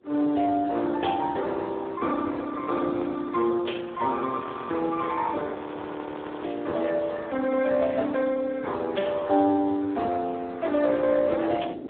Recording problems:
telephone audio; 240 Hz to 2.1 kHz, Speex
wind on the microphone; below 480 Hz, SNR 18 dB
audio freezing; at 4.5 s and at 5.5 s for 1 s

